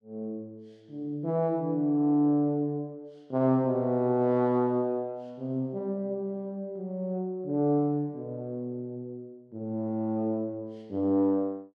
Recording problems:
none

